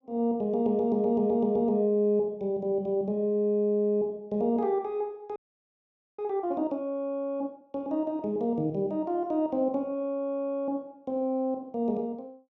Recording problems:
audio freezing; at 5.5 s for 1 s

